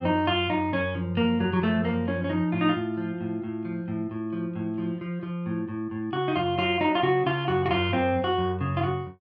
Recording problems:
none

